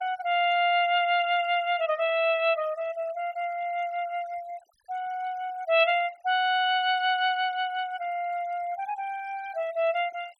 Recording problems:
noise reduction artefacts; signal-to-artefact ratio 25 dB

